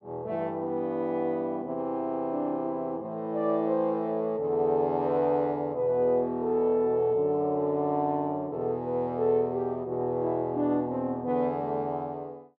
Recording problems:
none

